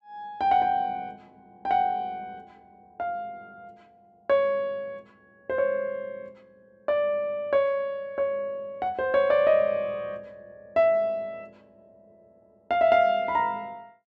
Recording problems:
none

